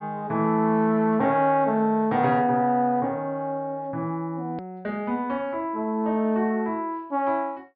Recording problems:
treble missing; nothing above 5.1 kHz
hard cut with a click; at 4.5 s

